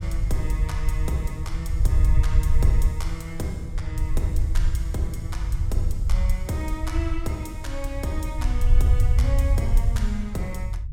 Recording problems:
rumble; below 70 Hz, SNR -7 dB

